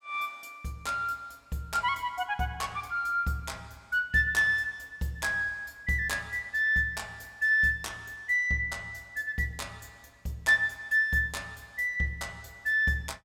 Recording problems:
none

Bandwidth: 16.5 kHz